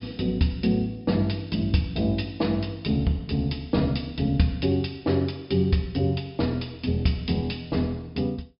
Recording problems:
low-pass filter; nothing above 5.5 kHz

